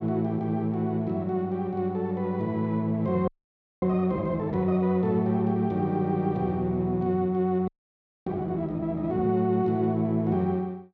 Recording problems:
frozen audio; at 3.5 s for 0.5 s and at 7.5 s for 0.5 s

